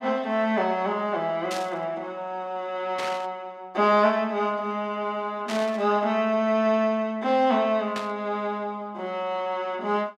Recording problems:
static burst; 4 times, first at 1.5 s; peak -4 dB vs average level

